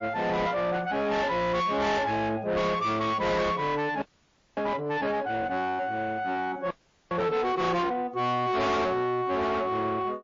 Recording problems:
lossy compression; MP3, then MP3, log-spectral distance 3 dB, nothing above 7.1 kHz
distorted audio; soft clipping, signal-to-distortion ratio 7 dB
audio freezing; at 4 s for 0.5 s and at 6.5 s

